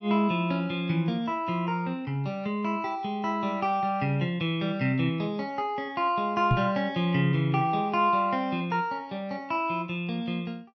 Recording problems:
knock on the microphone; at 6.5 s; peak +6 dB vs average level

